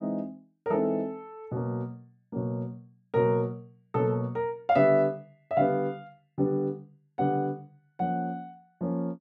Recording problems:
none

